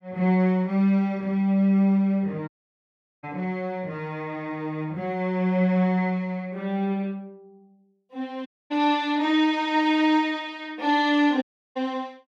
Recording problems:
dropout; at 2.5 s for 1 s, at 8.5 s and at 11 s

